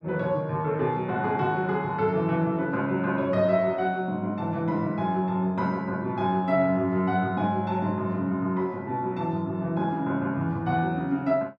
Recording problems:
none

